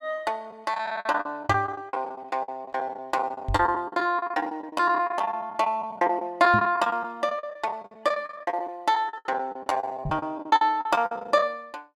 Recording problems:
packet loss; 20% of the sound replaced, filled with the last packet
knock on the microphone; 4 times, first at 1.5 s; peak +1 dB vs average level

